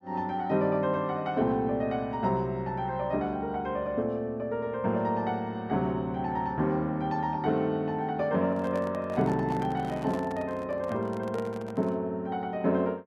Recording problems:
microphone handling noise; from 8.5 to 12 s; peak -7 dB vs average level

